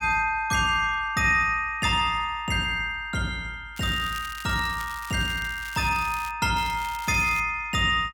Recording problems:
crackle; from 4 to 6.5 s and at 6.5 s; loose cable, SNR 17 dB

